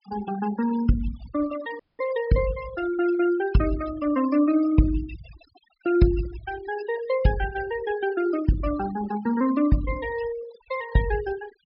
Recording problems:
treble cut off; nothing above 5.5 kHz
denoising artefacts; signal-to-artefact ratio 15 dB
audio cutting out; at 2 s

